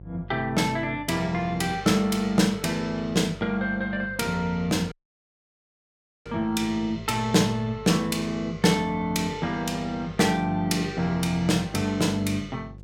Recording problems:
hum; 50 Hz, harmonics up to 700 Hz, SNR 19 dB
audio cutting out; at 5 s for 1.5 s

